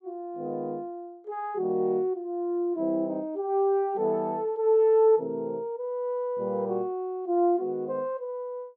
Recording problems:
none

